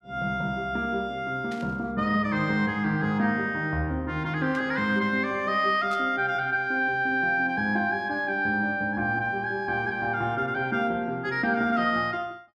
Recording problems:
burst of static; at 1.5 s, at 4.5 s and at 6 s; peak -14 dB vs average level

